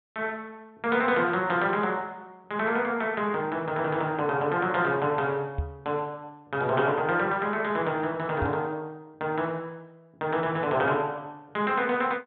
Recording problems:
treble missing; nothing above 4 kHz
knock on the microphone; at 5.5 s and at 8.5 s; peak +1 dB vs average level

